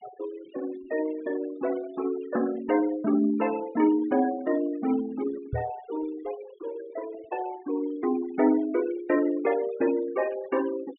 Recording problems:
treble missing; nothing above 3.5 kHz
denoising artefacts; signal-to-artefact ratio 17 dB
microphone bump; at 5.5 s; peak 0 dB vs average level

